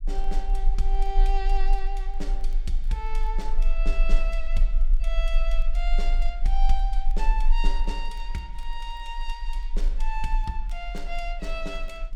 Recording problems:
rumble; below 32 Hz, strongest tone 22 Hz, SNR -7 dB
crackling; vinyl, SNR 30 dB

